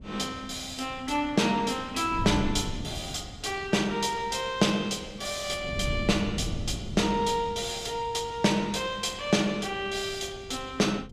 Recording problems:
wind noise; below 190 Hz, SNR 12 dB

